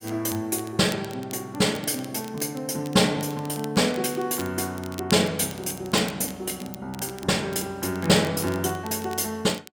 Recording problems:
crackle; vinyl, SNR 18 dB

